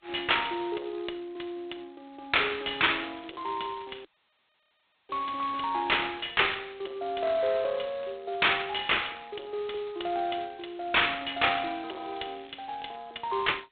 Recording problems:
phone line; 300 Hz to 3.6 kHz, G.726
distortion; soft clipping, signal-to-distortion ratio 11 dB
crackling; from 3 to 6.5 s and from 12 to 13 s; loose cable, SNR 29 dB
audio cutting out; at 4 s for 1 s

